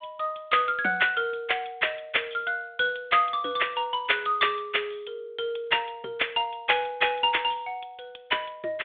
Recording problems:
phone line; 240 Hz to 3.6 kHz, G.726

